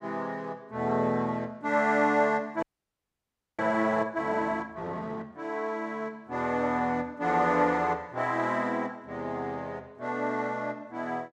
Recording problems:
frozen audio; at 2.5 s for 1 s

